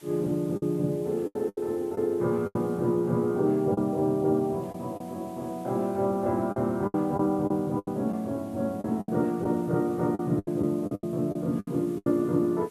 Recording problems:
hiss; slope -1 dB per octave, SNR 27 dB
lost packets; 9% of the sound replaced, filled with the last packet

